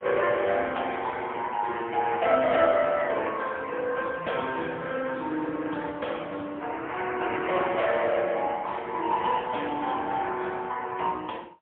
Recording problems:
phone line; 280 Hz to 3.3 kHz, AMR-NB, then MP3

